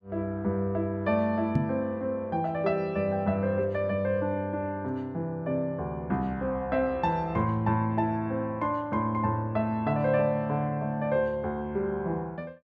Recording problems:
microphone bump; at 1.5 s; peak +6 dB vs average level

